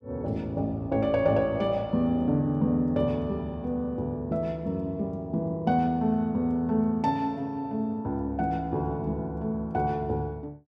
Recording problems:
none

